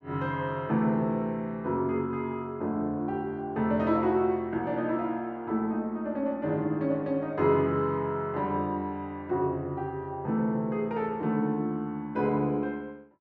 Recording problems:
none

